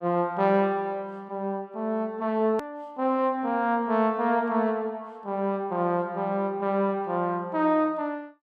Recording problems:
click at an edit; at 2.5 s

